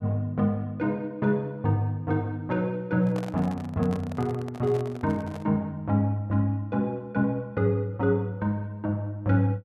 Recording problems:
microphone handling noise; from 3 to 5.5 s; peak -8 dB vs average level

